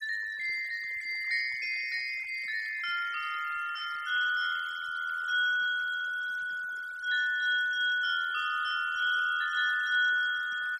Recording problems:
noise reduction artefacts; signal-to-artefact ratio 19 dB

